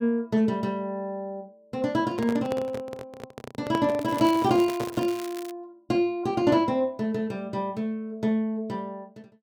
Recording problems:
microphone handling noise; from 2 to 5 s; peak -2 dB vs average level
crackle; from 4 to 5.5 s; loose cable, SNR 16 dB

